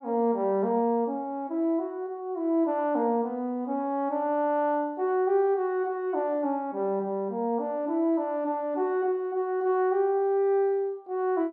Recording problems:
none

